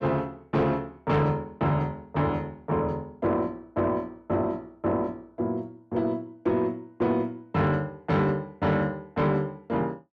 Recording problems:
distortion; soft clipping, signal-to-distortion ratio 12 dB

